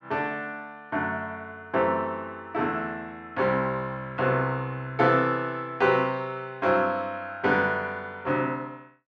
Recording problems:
none

